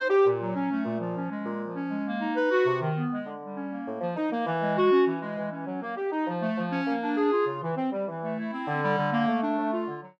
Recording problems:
none

